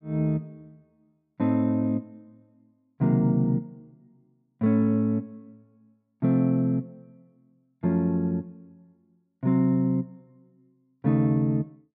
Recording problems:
none

